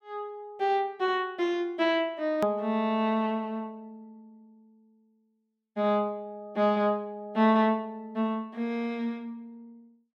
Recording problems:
edit click; at 2.5 s

